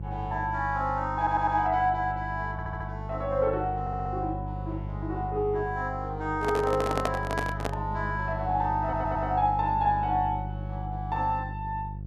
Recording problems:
hum; 50 Hz, harmonics up to 350 Hz, SNR 7 dB
audio stuttering; 4 times, first at 1 s
handling noise; from 6.5 to 8 s; peak +5 dB vs average level

